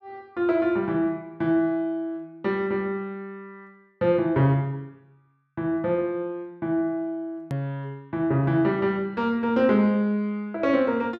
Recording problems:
edit click; at 7.5 s

